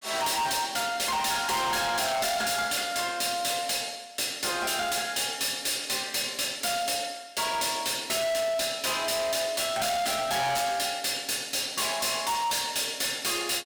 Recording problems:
distortion; hard clipping, signal-to-distortion ratio 6 dB

